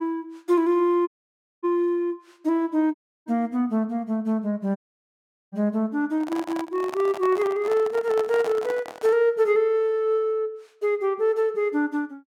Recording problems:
dropout; at 1 s for 0.5 s, at 3 s and at 5 s for 1 s
handling noise; from 6 to 9 s; peak -6 dB vs average level

